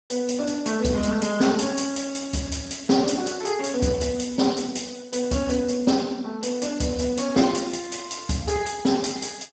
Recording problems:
codec artefacts; Speex, log-spectral distance 8 dB, nothing above 7.6 kHz

